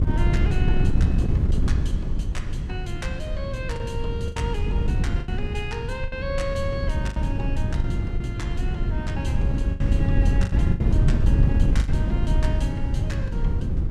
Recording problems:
wind on the microphone; below 120 Hz, SNR -10 dB
packet loss; 6% of the sound replaced, filled with the last packet

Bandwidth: 14 kHz